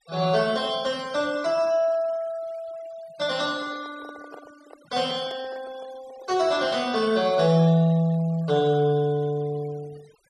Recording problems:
denoising artefacts; signal-to-artefact ratio 23 dB
handling noise; from 3.5 to 7 s; peak -11 dB vs average level

